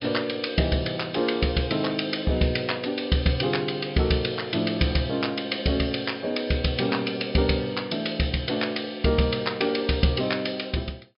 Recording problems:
treble missing; nothing above 5.5 kHz

